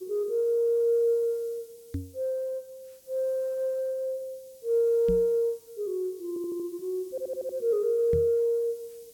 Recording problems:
background hiss; SNR 26 dB
knock on the microphone; at 2 s, at 5 s and at 8 s; peak -1 dB vs average level
audio stuttering; at 6.5 s and at 7 s

